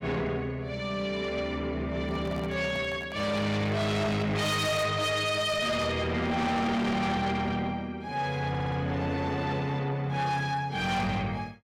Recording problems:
distortion; soft clipping, signal-to-distortion ratio 7 dB
handling noise; from 2 to 4.5 s; peak -8 dB vs average level
audio stuttering; at 8.5 s

